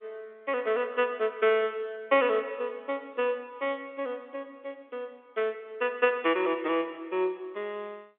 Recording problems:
telephone audio; 280 Hz to 3.5 kHz, G.711

